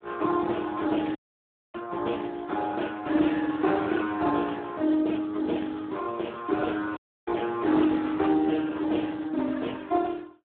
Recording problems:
phone line; 220 Hz to 2.2 kHz, Speex
audio cutting out; at 1 s for 0.5 s and at 7 s

